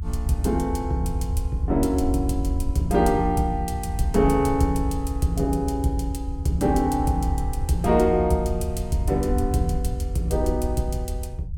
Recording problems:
low-frequency rumble; below 78 Hz, SNR 6 dB

